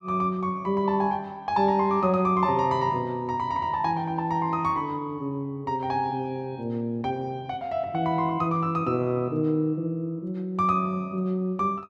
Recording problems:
none

